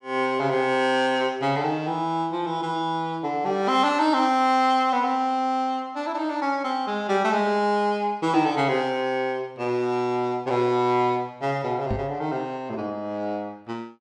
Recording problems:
microphone thump; at 12 s; peak -1 dB vs average level

